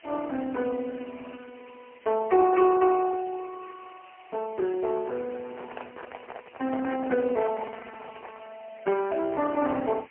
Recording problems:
telephone audio; 280 Hz to 2.6 kHz, AMR-NB, then MP3
hiss; SNR 27 dB
handling noise; from 5.5 to 8.5 s; peak -8 dB vs average level

